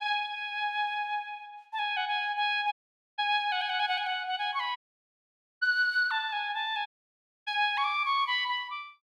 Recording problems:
audio cutting out; at 2.5 s, at 5 s for 1 s and at 7 s for 0.5 s

